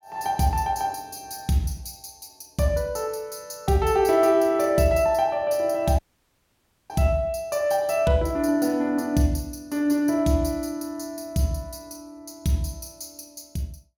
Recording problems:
audio cutting out; at 6 s for 1 s

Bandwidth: 16.5 kHz